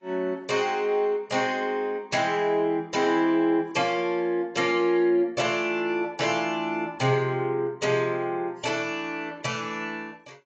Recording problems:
codec artefacts; AAC, log-spectral distance 2 dB

